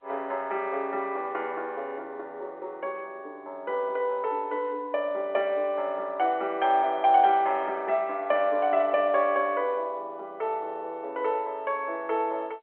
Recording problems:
phone line; 300 Hz to 3.3 kHz, G.711

